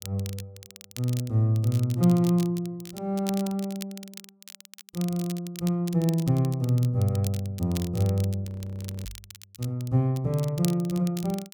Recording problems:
crackling; vinyl, SNR 16 dB
frozen audio; at 8.5 s for 0.5 s
microphone bump; at 9 s; peak -13 dB vs average level

